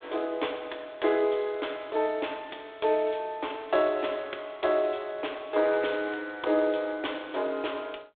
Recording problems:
telephone audio; 280 Hz to 3.6 kHz, G.726

